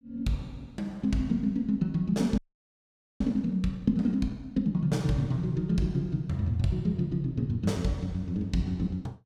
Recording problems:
audio freezing; at 2.5 s for 1 s

